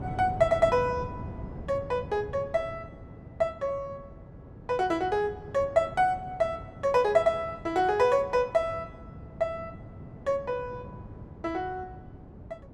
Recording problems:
wind on the microphone; below 290 Hz, SNR 15 dB

